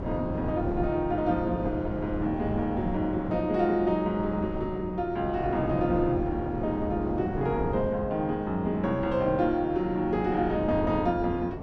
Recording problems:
wind on the microphone; below 390 Hz, SNR 8 dB

